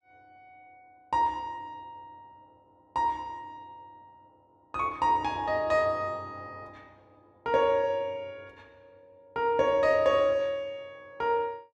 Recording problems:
none

